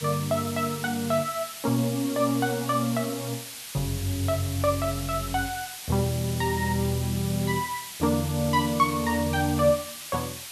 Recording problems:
hiss; slope +3 dB per octave, SNR 10 dB

